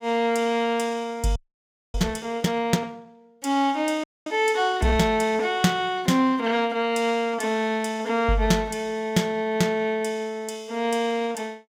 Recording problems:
frozen audio; at 1.5 s for 0.5 s and at 4 s

